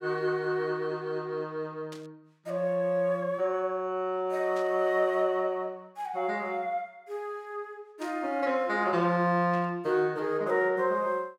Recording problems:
burst of static; 4 times, first at 2 s; peak -13 dB vs average level

